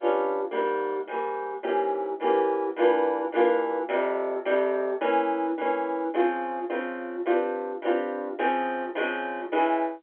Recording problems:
telephone audio; 280 Hz to 3.5 kHz, G.711

